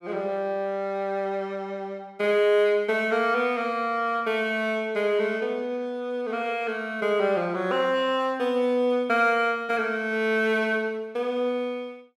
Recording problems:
none

